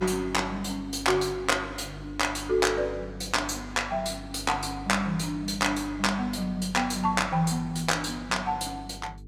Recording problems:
hum; 50 Hz, harmonics up to 450 Hz, SNR 16 dB

